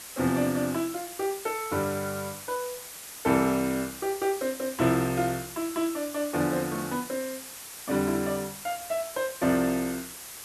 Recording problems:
hiss; slope 0 dB per octave, SNR 10 dB

